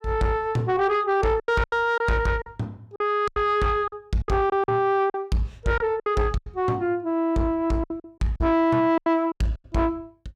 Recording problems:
distortion; soft clipping, signal-to-distortion ratio 12 dB
lost packets; 11% of the sound replaced, filled with silence

